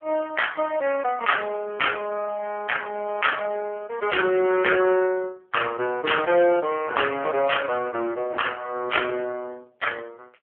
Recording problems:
telephone audio; 240 Hz to 3.2 kHz, AMR-NB

